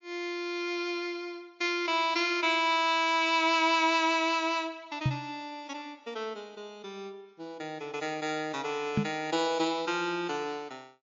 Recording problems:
lossy codec; MP3, log-spectral distance 2 dB
microphone thump; at 5 s and at 9 s; peak +5 dB vs average level

